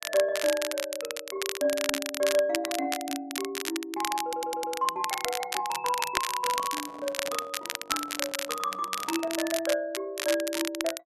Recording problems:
crackling; vinyl, SNR 3 dB
audio stuttering; at 4 s
handling noise; from 6.5 to 9.5 s; peak -9 dB vs average level

